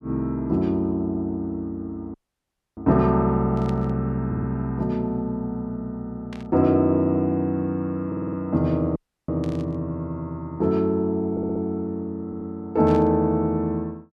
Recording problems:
dropout; at 2 s for 0.5 s and at 9 s
static burst; 4 times, first at 3.5 s; peak -14 dB vs average level
stutter; 4 times, first at 4.5 s

